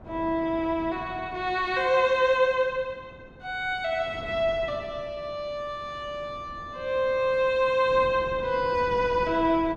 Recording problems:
wind noise; below 450 Hz, SNR 18 dB

